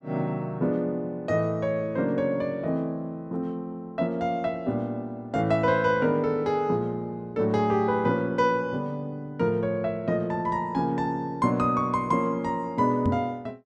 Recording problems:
microphone bump; at 13 s; peak +4 dB vs average level

